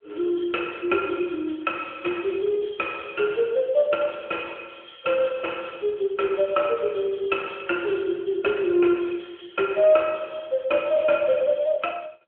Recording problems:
phone line; 240 Hz to 3.3 kHz, AMR-NB

